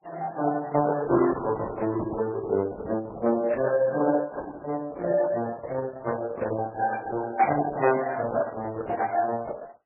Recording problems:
lossy compression; Opus, then MP3, log-spectral distance 4 dB, nothing above 2.4 kHz

